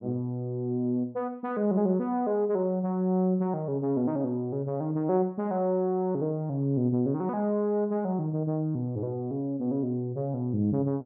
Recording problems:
none

